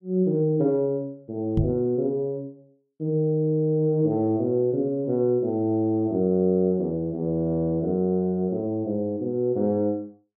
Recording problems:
knock on the microphone; at 1.5 s; peak +4 dB vs average level

